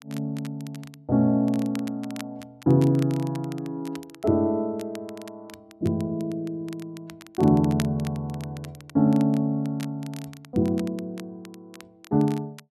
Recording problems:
crackling; vinyl, SNR 21 dB

